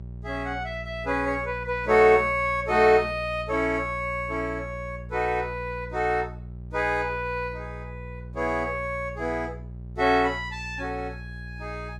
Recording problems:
hum; 60 Hz, harmonics up to 420 Hz, SNR 14 dB

